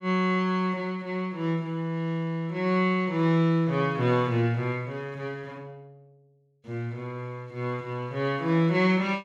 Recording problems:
none

